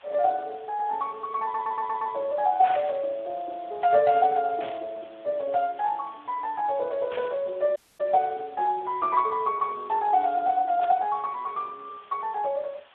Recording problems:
phone line; 340 Hz to 3.6 kHz, Speex
hiss; SNR 27 dB
audio stuttering; at 1.5 s
burst of static; 4 times, first at 2.5 s; peak -7 dB vs average level
audio cutting out; at 8 s

